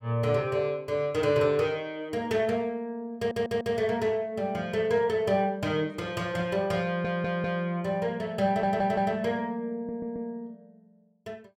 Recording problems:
stutter; 4 times, first at 3 s

